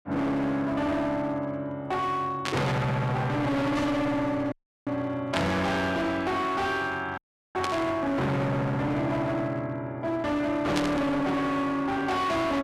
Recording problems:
distortion; hard clipping, signal-to-distortion ratio 6 dB
burst of static; 4 times, first at 2.5 s; peak +1 dB vs average level
audio cutting out; at 4.5 s and at 7 s

